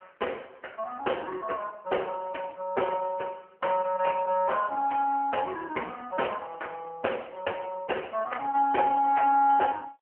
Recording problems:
telephone audio; 320 Hz to 3.1 kHz, AMR-NB

